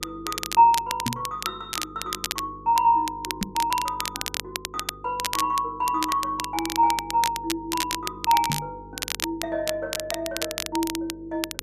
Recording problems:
hum; 50 Hz, harmonics up to 500 Hz, SNR 21 dB
crackling; vinyl, SNR 6 dB
microphone thump; at 1 s, at 3.5 s and at 8.5 s; peak +1 dB vs average level

